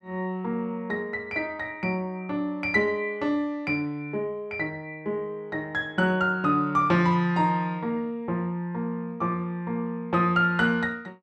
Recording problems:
none

